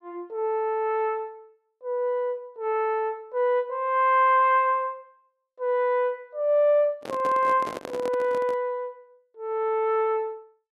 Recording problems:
microphone handling noise; from 7 to 8.5 s; peak -6 dB vs average level

